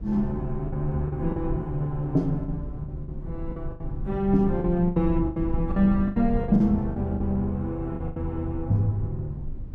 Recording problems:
low-frequency rumble; below 78 Hz, SNR 10 dB
packet loss; 10% of the sound replaced, filled with the last packet

